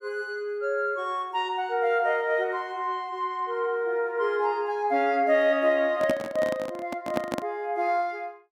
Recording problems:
handling noise; from 6 to 7.5 s; peak +2 dB vs average level

